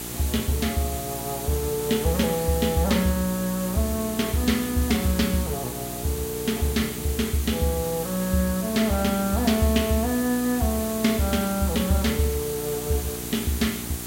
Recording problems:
electrical hum; 60 Hz, harmonics up to 1.2 kHz, SNR 12 dB
background hiss; slope -1 dB per octave, SNR 8 dB

